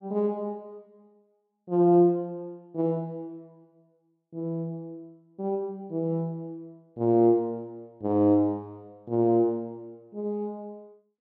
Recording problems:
none

